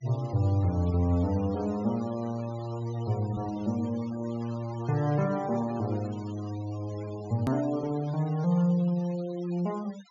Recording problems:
treble cut off; nothing above 7.2 kHz
denoising artefacts; signal-to-artefact ratio 20 dB
edit click; at 7.5 s

